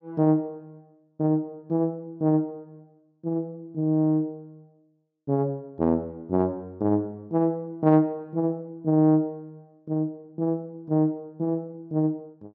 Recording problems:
treble missing; nothing above 8 kHz

